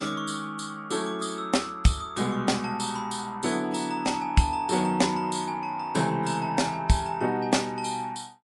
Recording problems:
codec artefacts; MP3, log-spectral distance 3 dB, nothing above 11 kHz

